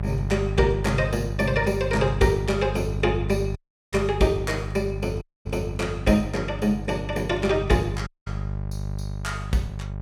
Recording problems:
hum; 50 Hz, harmonics up to 600 Hz, SNR 6 dB
dropout; at 3.5 s, at 5 s and at 8 s

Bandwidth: 17 kHz